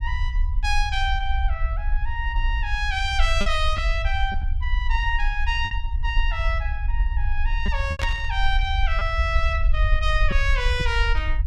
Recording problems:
rumble; below 58 Hz, SNR 0 dB
packet loss; 3% of the sound replaced, filled with repeated pitch periods
static burst; at 8 s; peak +1 dB vs average level

